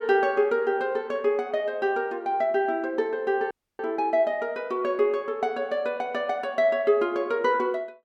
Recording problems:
audio cutting out; at 3.5 s

